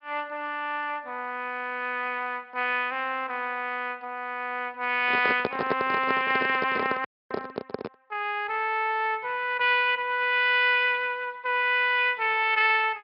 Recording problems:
treble missing; nothing above 4.5 kHz
lossy compression; Speex, log-spectral distance 3 dB
microphone handling noise; from 5 to 8 s; peak +1 dB vs average level
audio cutting out; at 7 s

